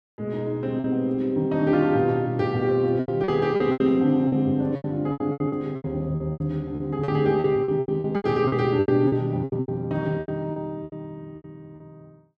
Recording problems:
lost packets; 15% of the sound replaced, filled with repeated pitch periods

